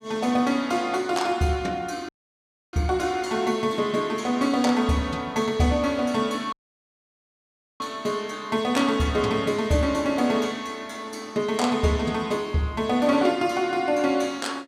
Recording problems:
audio cutting out; at 2 s for 0.5 s and at 6.5 s for 1.5 s

